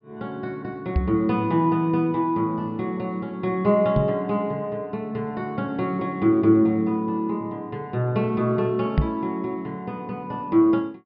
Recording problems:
treble cut off; nothing above 5.5 kHz
microphone thump; at 1 s, at 4 s and at 9 s; peak +7 dB vs average level

